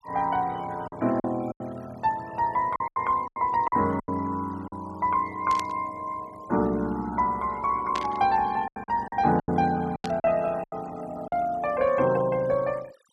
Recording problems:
noise reduction artefacts; signal-to-artefact ratio 21 dB
packet loss; 8% of the sound replaced, filled with silence
static burst; at 5.5 s, at 8 s and at 10 s; peak -4 dB vs average level

